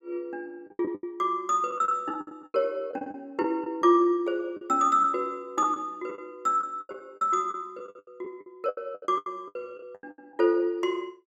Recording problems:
lost packets; 15% of the sound replaced, filled with the last packet

